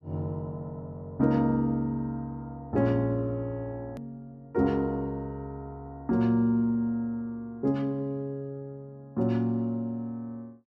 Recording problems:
click at an edit; at 4 s

